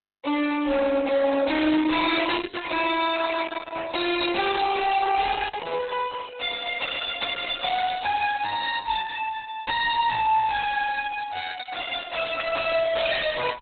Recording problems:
lossy codec; Opus, log-spectral distance 7 dB, nothing above 4 kHz
distortion; soft clipping, signal-to-distortion ratio 6 dB

